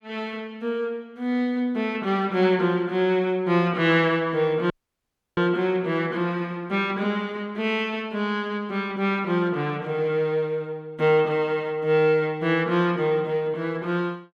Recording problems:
audio cutting out; at 4.5 s for 0.5 s

